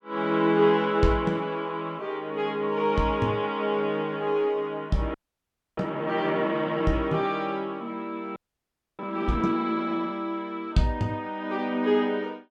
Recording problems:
frozen audio; at 5 s for 0.5 s and at 8.5 s for 0.5 s

